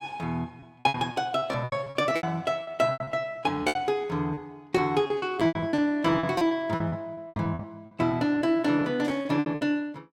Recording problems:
packet loss; 18% of the sound replaced, filled with repeated pitch periods
burst of static; at 9 s; peak -13 dB vs average level

